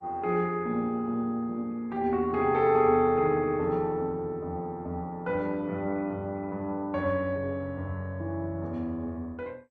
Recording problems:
lossy codec; Opus, then MP2, log-spectral distance 2 dB

